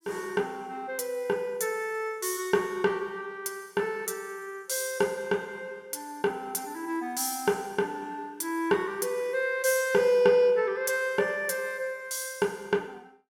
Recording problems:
none

